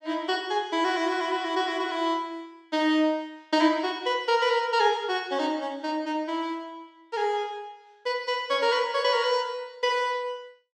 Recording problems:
none

